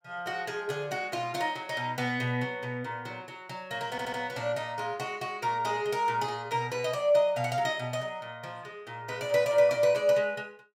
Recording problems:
stutter; at 4 s

